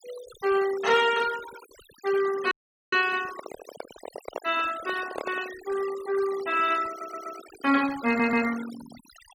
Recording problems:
denoising artefacts; signal-to-artefact ratio 15 dB
frozen audio; at 2.5 s
handling noise; from 3 to 5.5 s; peak -3 dB vs average level
audio stuttering; at 7 s and at 8 s

